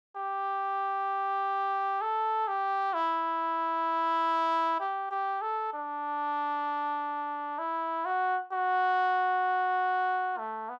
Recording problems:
none

